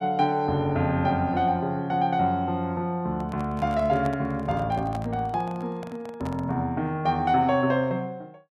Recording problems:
handling noise; from 3 to 6.5 s; peak -8 dB vs average level

